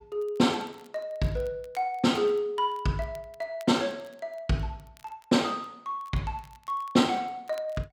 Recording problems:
crackle; vinyl, SNR 29 dB

